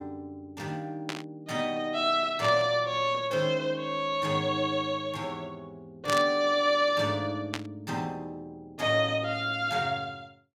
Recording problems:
static burst; 4 times, first at 1 s; peak -1 dB vs average level

